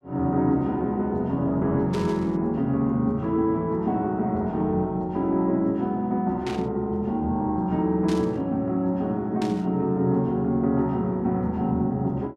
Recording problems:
static burst; 4 times, first at 2 s; peak -8 dB vs average level

